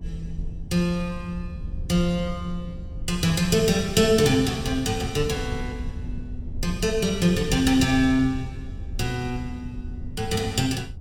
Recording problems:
rumble; below 90 Hz, SNR 12 dB

